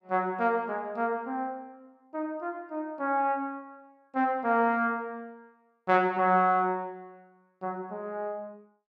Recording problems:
none

